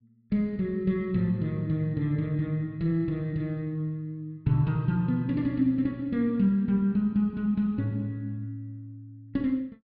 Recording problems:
treble cut off; nothing above 5.5 kHz

